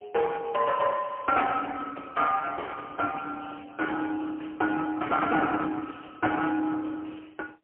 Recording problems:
phone line; 320 Hz to 3.3 kHz, AMR-NB, then MP3

